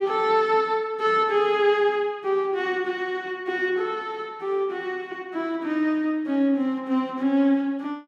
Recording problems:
none

